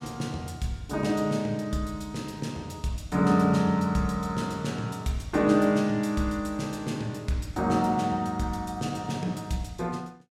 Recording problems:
none

